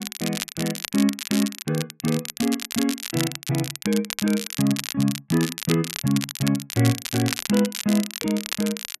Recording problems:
crackling; vinyl, SNR 6 dB

